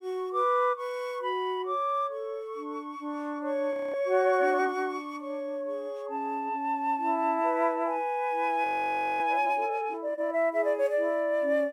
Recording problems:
frozen audio; at 3.5 s and at 8.5 s for 0.5 s

